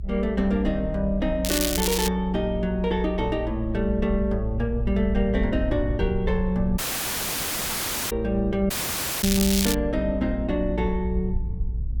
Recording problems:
rumble; below 60 Hz, strongest tone 56 Hz, SNR 6 dB
crackle; at 1.5 s and at 9 s; loose cable, SNR 1 dB
audio cutting out; at 7 s for 1.5 s and at 8.5 s for 0.5 s

